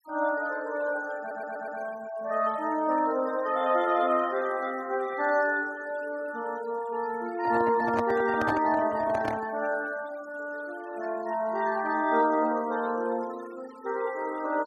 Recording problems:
denoising artefacts; signal-to-artefact ratio 19 dB
stutter; at 1 s
handling noise; from 7.5 to 9.5 s; peak 0 dB vs average level

